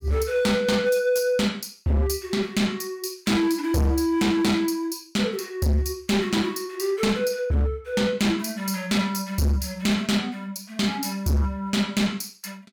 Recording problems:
distortion; hard clipping, signal-to-distortion ratio 7 dB

